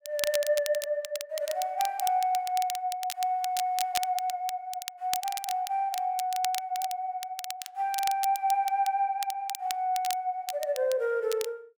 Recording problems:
crackle; vinyl, SNR 9 dB

